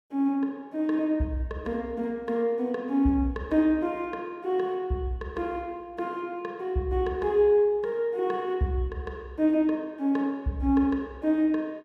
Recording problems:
none

